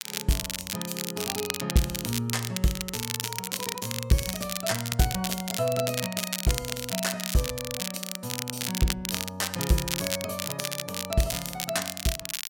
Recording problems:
crackle; vinyl, SNR 1 dB

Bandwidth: 16.5 kHz